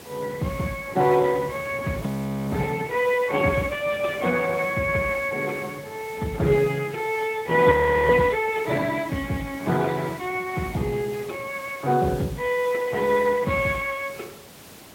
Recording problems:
codec artefacts; AAC, then Speex, log-spectral distance 5 dB
background hiss; slope -2 dB per octave, SNR 21 dB
wind noise; below 790 Hz, SNR 21 dB
audio freezing; at 2 s and at 7.5 s

